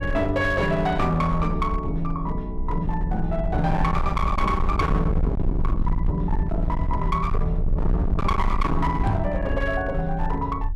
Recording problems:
distortion; hard clipping, signal-to-distortion ratio 8 dB
rumble; below 70 Hz, SNR 3 dB
microphone thump; at 9 s; peak +4 dB vs average level

